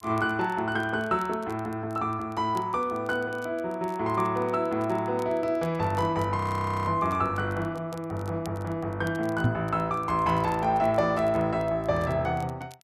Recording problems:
crackle; vinyl, SNR 27 dB
audio freezing; at 6.5 s for 0.5 s
microphone bump; at 9.5 s; peak +6 dB vs average level

